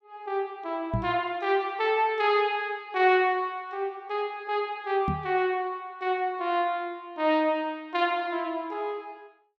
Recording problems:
microphone bump; at 1 s and at 5 s; peak +2 dB vs average level

